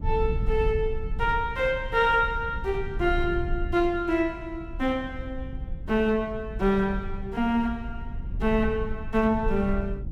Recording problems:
rumble; below 72 Hz, SNR 9 dB

